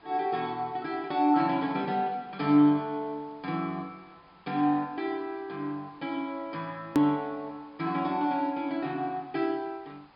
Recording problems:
treble cut off; nothing above 5 kHz
hiss; SNR 28 dB
click at an edit; at 7 s

